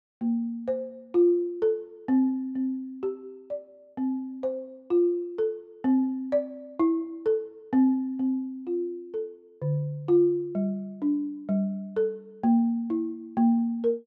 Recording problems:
none

